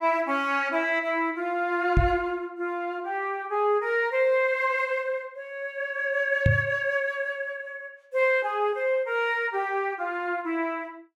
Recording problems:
knock on the microphone; at 2 s and at 6.5 s; peak +7 dB vs average level

